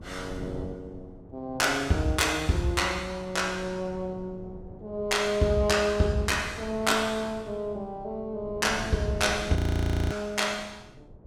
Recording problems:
wind on the microphone; below 310 Hz, SNR 17 dB
audio freezing; at 9.5 s for 0.5 s

